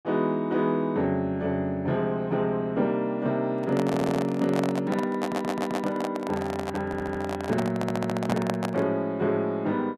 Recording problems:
handling noise; from 3.5 to 9 s; peak +2 dB vs average level
audio stuttering; 4 times, first at 4 s

